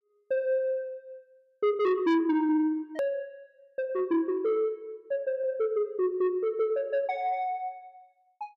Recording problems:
distorted audio; soft clipping, signal-to-distortion ratio 7 dB
edit click; at 3 s

